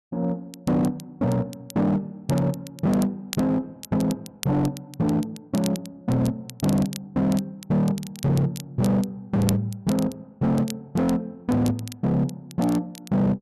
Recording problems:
distortion; hard clipping, signal-to-distortion ratio 11 dB
crackling; vinyl, SNR 17 dB

